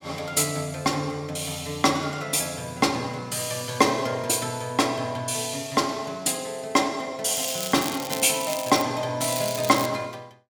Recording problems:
crackle; from 7.5 to 9 s and at 9 s; loose cable, SNR 9 dB

